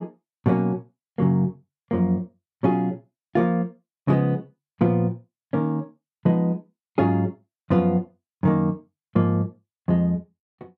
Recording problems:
none

